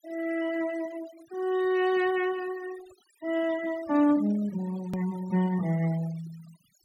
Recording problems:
denoising artefacts; signal-to-artefact ratio 19 dB
click at an edit; at 5 s

